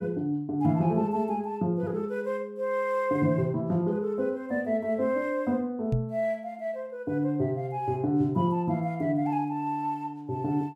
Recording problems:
microphone bump; at 6 s; peak +4 dB vs average level

